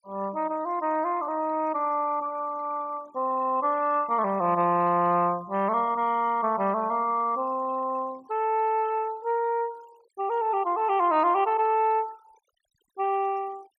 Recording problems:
noise reduction artefacts; signal-to-artefact ratio 25 dB

